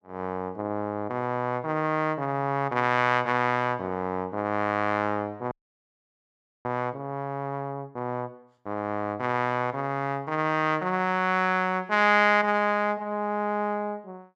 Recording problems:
frozen audio; at 5.5 s for 1 s

